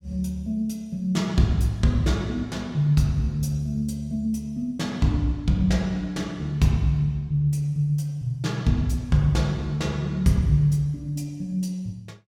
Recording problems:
none

